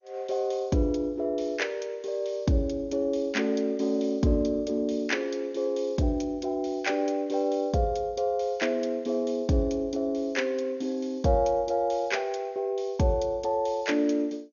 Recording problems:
lossy compression; MP2, log-spectral distance 3 dB, nothing above 6.7 kHz

